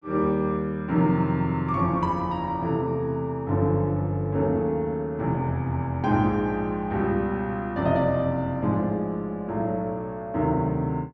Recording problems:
none

